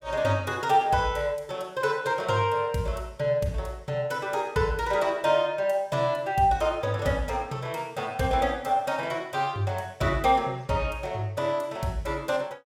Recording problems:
none

